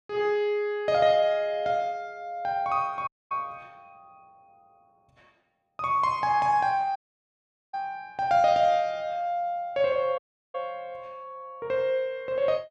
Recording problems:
dropout; at 3 s, at 7 s for 1 s and at 10 s

